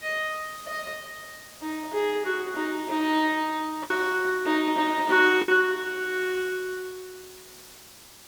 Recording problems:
hiss; slope -1 dB per octave, SNR 19 dB
lost packets; 1.7% of the sound replaced, filled with the last packet

